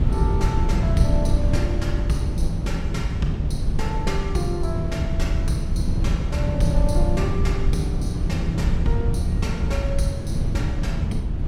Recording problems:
wind noise; below 110 Hz, SNR -4 dB

